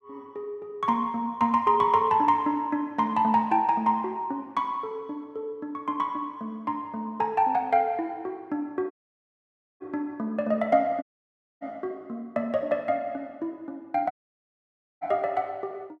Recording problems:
audio cutting out; at 9 s for 1 s, at 11 s for 0.5 s and at 14 s for 1 s

